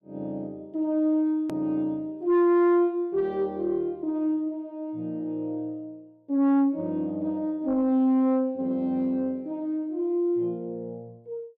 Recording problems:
distortion; soft clipping, signal-to-distortion ratio 10 dB
hard cut with a click; at 1.5 s

